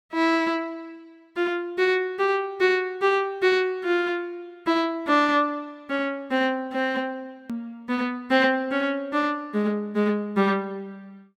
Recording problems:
hard cut with a click; at 7.5 s

